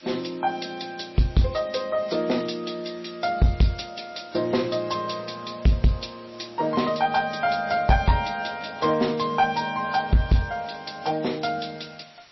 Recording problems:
codec artefacts; G.722, then MP3, log-spectral distance 10 dB, nothing above 5.7 kHz
distortion; soft clipping, signal-to-distortion ratio 10 dB
background hiss; slope +1 dB per octave, SNR 24 dB

